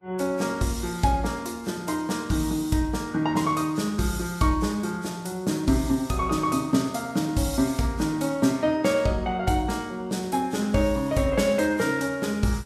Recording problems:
lossy compression; Vorbis, log-spectral distance 3 dB, nothing above 12.7 kHz

